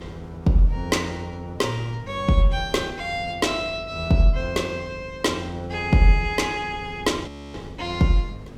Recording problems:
hum; 50 Hz, harmonics up to 500 Hz, SNR 20 dB
wind noise; below 250 Hz, SNR 22 dB
audio freezing; at 7.5 s

